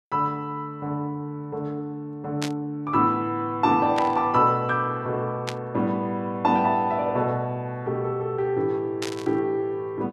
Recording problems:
burst of static; 4 times, first at 2.5 s; peak -1 dB vs average level

